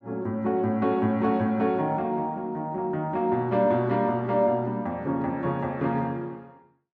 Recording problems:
none

